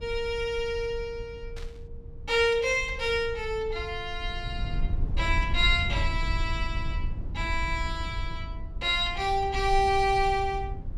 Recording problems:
rumble; below 74 Hz, SNR 8 dB
burst of static; at 1.5 s; peak -14 dB vs average level

